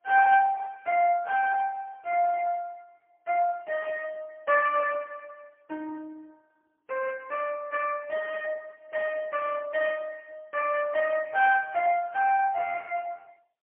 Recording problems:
phone line; 470 Hz to 2.3 kHz, AMR-NB, then MP3

